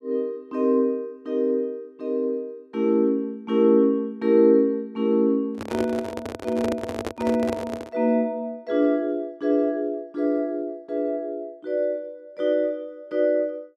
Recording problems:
microphone handling noise; from 5.5 to 8 s; peak -1 dB vs average level

